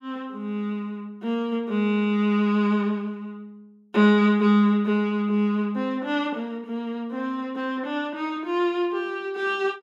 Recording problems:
none

